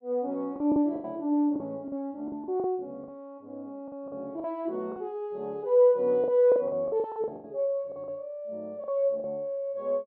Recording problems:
packet loss; 11% of the sound replaced, filled with the last packet

